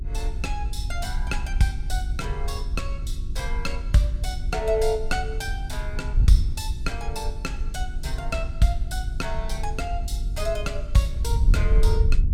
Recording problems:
electrical hum; 50 Hz, harmonics up to 400 Hz, SNR 14 dB
wind on the microphone; below 62 Hz, SNR 0 dB

